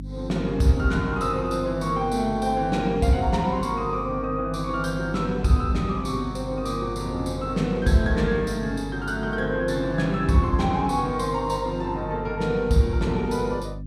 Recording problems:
hum; 50 Hz, harmonics up to 300 Hz, SNR 11 dB

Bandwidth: 14.5 kHz